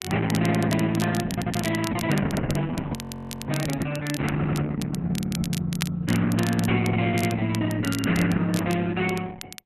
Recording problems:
lossy codec; Opus, log-spectral distance 3 dB
crackling; vinyl, SNR 12 dB
stutter; 4 times, first at 1.5 s
audio freezing; at 3 s for 0.5 s

